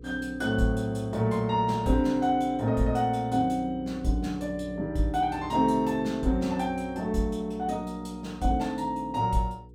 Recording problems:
electrical hum; 60 Hz, harmonics up to 480 Hz, SNR 20 dB

